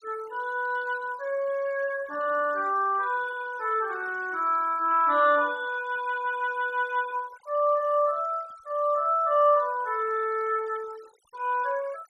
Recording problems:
noise reduction artefacts; signal-to-artefact ratio 25 dB

